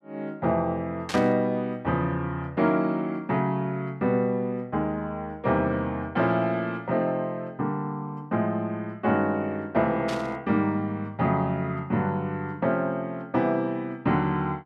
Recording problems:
burst of static; at 1 s and at 10 s; peak -3 dB vs average level

